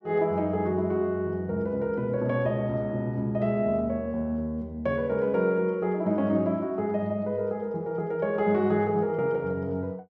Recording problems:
none

